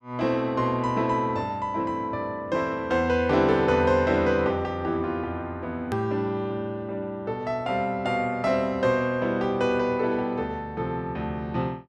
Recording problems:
hard cut with a click; at 6 s

